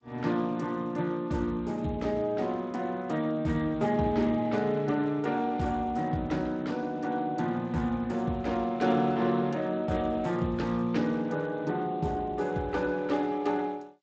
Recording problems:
codec artefacts; G.722, then Speex, log-spectral distance 3 dB

